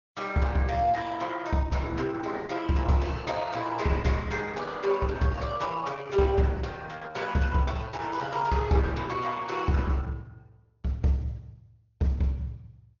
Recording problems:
low-pass filter; nothing above 6.7 kHz
codec artefacts; Opus, log-spectral distance 4 dB

